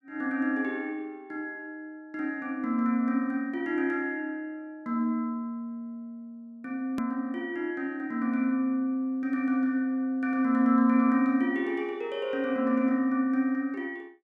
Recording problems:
click at an edit; at 7 s

